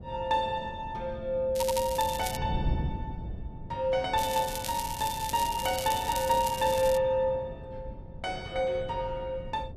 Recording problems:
wind noise; below 160 Hz, SNR 11 dB
crackle; at 1.5 s and from 4 to 7 s; loose cable, SNR 8 dB
stutter; at 1.5 s

